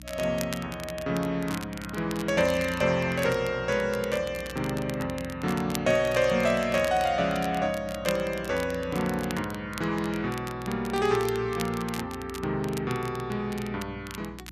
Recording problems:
hum; 60 Hz, harmonics up to 300 Hz, SNR 18 dB
crackle; vinyl, SNR 14 dB

